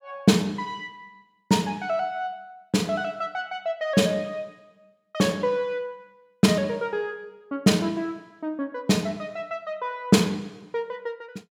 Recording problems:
none

